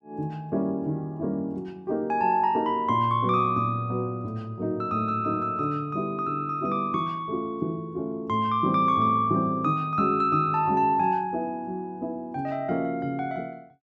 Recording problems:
none

